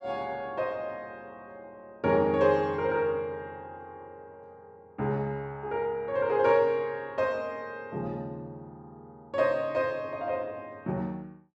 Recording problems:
none

